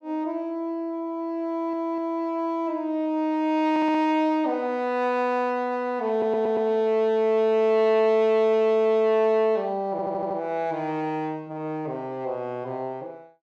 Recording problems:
stutter; 4 times, first at 1.5 s

